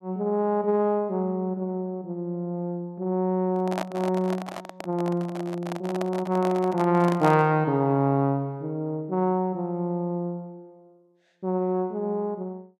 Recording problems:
microphone handling noise; from 3.5 to 7.5 s; peak 0 dB vs average level

